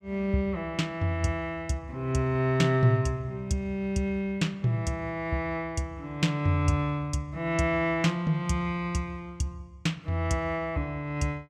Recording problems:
none

